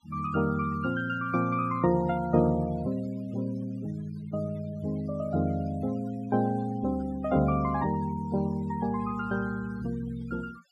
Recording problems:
noise reduction artefacts; signal-to-artefact ratio 21 dB

